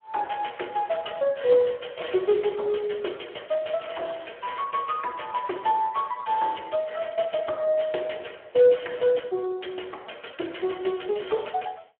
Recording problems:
phone line; 300 Hz to 3.3 kHz, Speex

